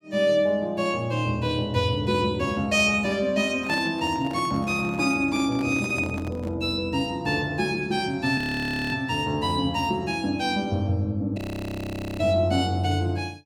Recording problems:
handling noise; from 3.5 to 6.5 s; peak -6 dB vs average level
frozen audio; at 8.5 s for 0.5 s and at 11 s for 1 s

